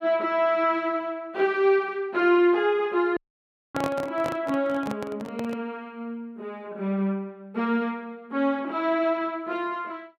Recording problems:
dropout; at 3 s for 0.5 s
handling noise; from 4 to 5.5 s; peak -2 dB vs average level

